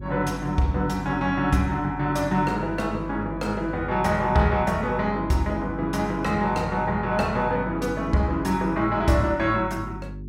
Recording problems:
hum; 50 Hz, harmonics up to 400 Hz, SNR 12 dB

